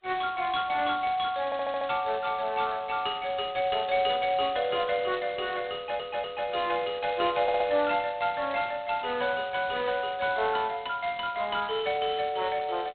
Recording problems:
telephone audio; 300 Hz to 3.9 kHz, G.726
audio stuttering; at 1.5 s, at 6 s and at 7.5 s

